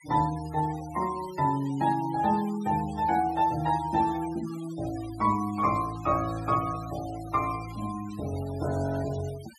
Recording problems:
denoising artefacts; signal-to-artefact ratio 17 dB

